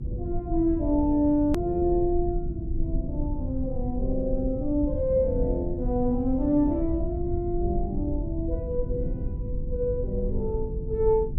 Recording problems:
hum; 50 Hz, harmonics up to 350 Hz, SNR 14 dB
rumble; below 84 Hz, SNR 6 dB
hard cut with a click; at 1.5 s

